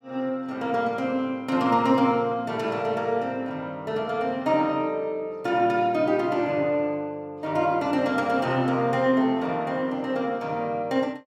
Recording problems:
none

